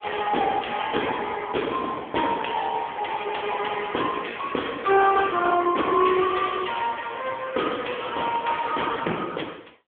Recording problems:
telephone audio; 280 Hz to 3.4 kHz, AMR-NB

